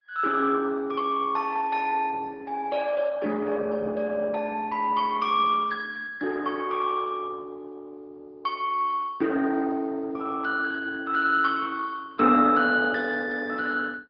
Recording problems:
treble missing; nothing above 5 kHz
codec artefacts; Opus, then Opus, log-spectral distance 3 dB

